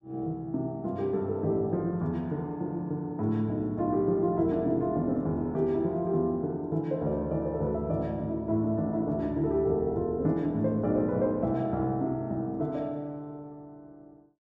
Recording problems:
none

